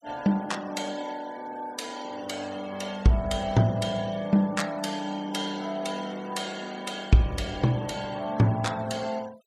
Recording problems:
denoising artefacts; signal-to-artefact ratio 20 dB

